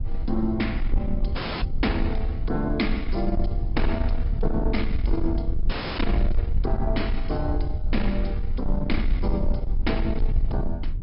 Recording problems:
low-pass filter; nothing above 5.3 kHz
codec artefacts; AAC, then G.722, log-spectral distance 2 dB
distortion; soft clipping, signal-to-distortion ratio 12 dB
low-frequency rumble; below 58 Hz, strongest tone 20 Hz, SNR 0 dB
audio cutting out; at 1.5 s and at 5.5 s

